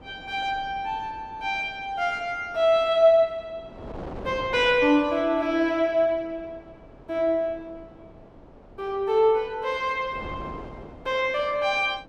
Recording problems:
wind on the microphone; below 640 Hz, SNR 20 dB

